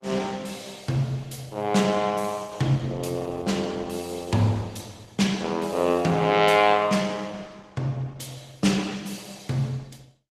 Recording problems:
codec artefacts; Opus, log-spectral distance 4 dB, nothing above 14.7 kHz

